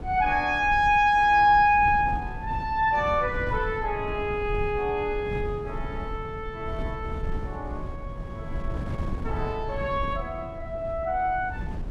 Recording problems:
wind on the microphone; below 140 Hz, SNR 11 dB

